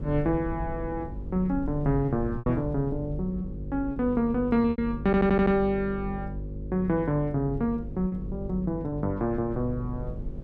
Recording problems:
hum; 50 Hz, harmonics up to 550 Hz, SNR 11 dB
wind on the microphone; below 84 Hz, SNR 14 dB
lost packets; 4% of the sound replaced, filled with repeated pitch periods
audio stuttering; at 5 s

